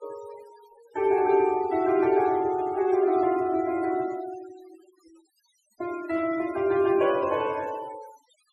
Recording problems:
denoising artefacts; signal-to-artefact ratio 21 dB

